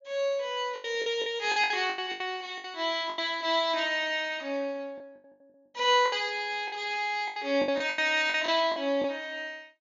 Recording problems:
treble cut off; nothing above 7.2 kHz
lost packets; 12% of the sound replaced, filled with the last packet

